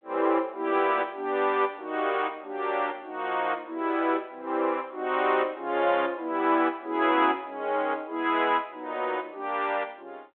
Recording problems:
phone line; 280 Hz to 3.6 kHz, G.726

